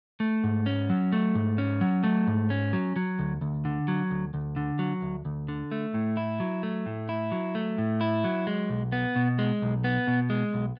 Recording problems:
none

